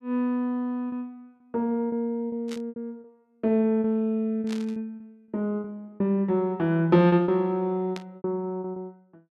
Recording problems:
lost packets; 10% of the sound replaced, filled with repeated pitch periods
burst of static; at 2.5 s, at 4.5 s and at 8 s; peak -9 dB vs average level

